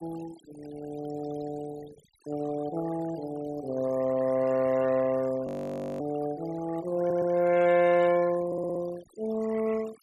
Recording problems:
noise reduction artefacts; signal-to-artefact ratio 19 dB
frozen audio; at 5.5 s for 0.5 s
stutter; at 7 s and at 8.5 s

